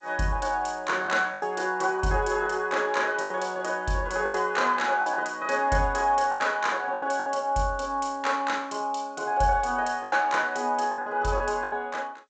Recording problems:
codec artefacts; G.722, log-spectral distance 3 dB, nothing above 7.6 kHz
packet loss; 7% of the sound replaced, filled with the last packet

